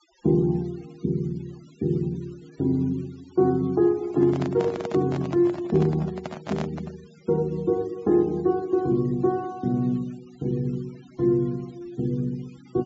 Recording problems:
treble cut off; nothing above 8 kHz
noise reduction artefacts; signal-to-artefact ratio 27 dB
handling noise; from 4 to 7 s; peak -4 dB vs average level

